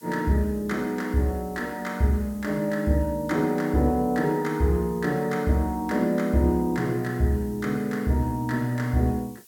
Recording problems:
background hiss; slope +4 dB per octave, SNR 25 dB

